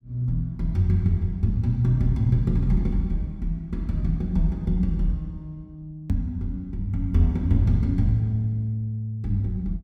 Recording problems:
hard cut with a click; at 6 s

